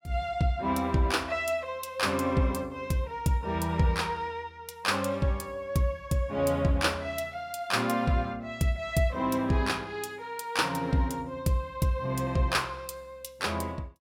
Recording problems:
none

